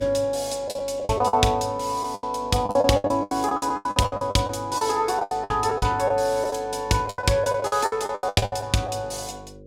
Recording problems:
hum; 50 Hz, harmonics up to 600 Hz, SNR 22 dB
packet loss; 19% of the sound replaced, filled with the last packet

